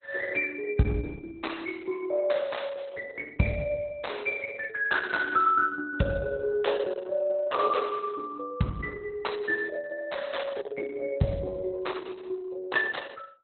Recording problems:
codec artefacts; Opus, log-spectral distance 4 dB, nothing above 4.1 kHz

